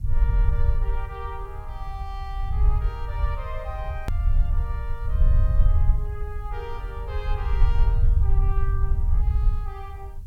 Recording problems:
background hiss; SNR 25 dB
low-frequency rumble; below 68 Hz, SNR -13 dB
click at an edit; at 4 s

